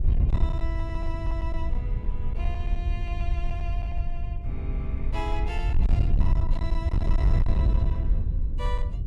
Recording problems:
distortion; hard clipping, uneven, signal-to-distortion ratio 8 dB
wind noise; below 72 Hz, SNR -11 dB

